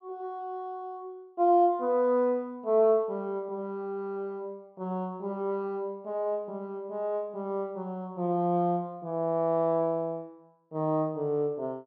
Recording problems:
none

